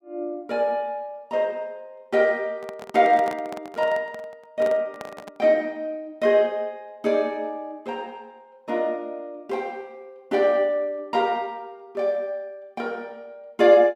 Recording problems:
microphone handling noise; from 2.5 to 5.5 s; peak -7 dB vs average level

